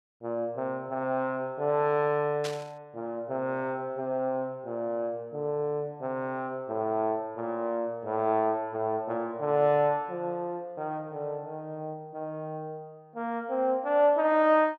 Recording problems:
static burst; at 2.5 s; peak -3 dB vs average level

